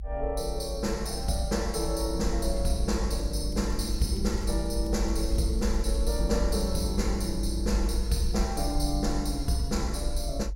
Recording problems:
rumble; below 54 Hz, SNR 2 dB
crackling; from 3.5 to 6.5 s; loose cable, SNR 26 dB

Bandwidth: 16 kHz